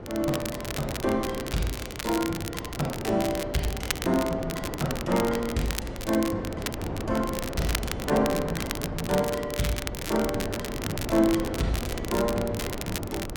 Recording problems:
wind noise; below 510 Hz, SNR 7 dB
crackling; vinyl, SNR 7 dB

